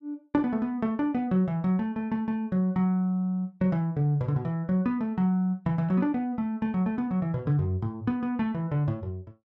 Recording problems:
none

